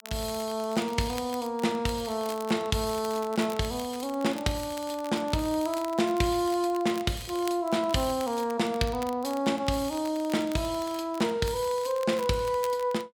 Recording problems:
crackle; vinyl, SNR 18 dB

